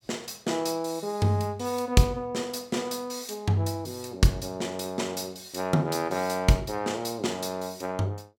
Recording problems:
none

